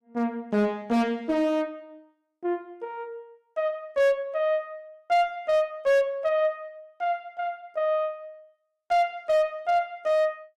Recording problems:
distortion; hard clipping, signal-to-distortion ratio 10 dB

